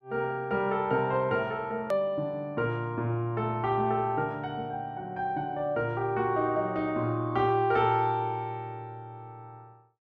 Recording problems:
click at an edit; at 2 s

